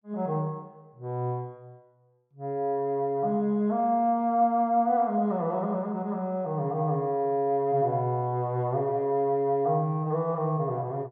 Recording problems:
none

